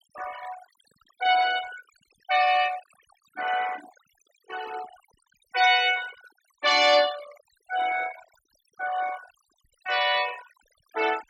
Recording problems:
denoising artefacts; signal-to-artefact ratio 15 dB

